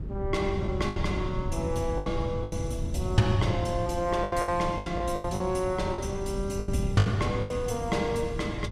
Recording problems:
wind noise; below 130 Hz, SNR 5 dB
packet loss; 10% of the sound replaced, filled with the last packet

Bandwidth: 16 kHz